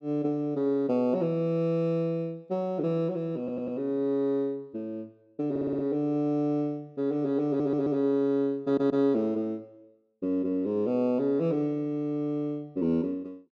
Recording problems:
audio stuttering; 4 times, first at 3.5 s

